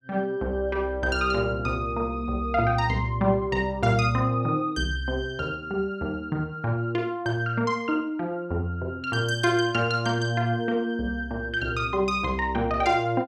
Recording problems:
none

